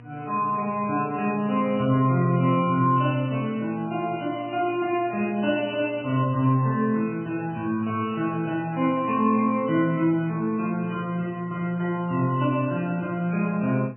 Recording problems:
lossy codec; MP3, log-spectral distance 2 dB, nothing above 2.5 kHz
hum; 60 Hz, harmonics up to 1.2 kHz, SNR 21 dB

